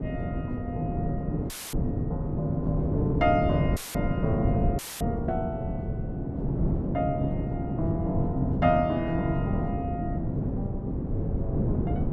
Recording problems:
wind on the microphone; below 250 Hz, SNR -1 dB
dropout; at 1.5 s, at 4 s and at 5 s; filled with static

